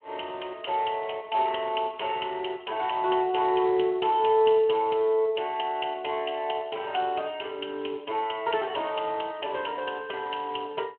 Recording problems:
phone line; 220 Hz to 3.2 kHz, Speex

